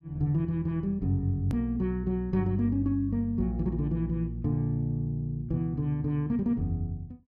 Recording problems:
hard cut with a click; at 1.5 s

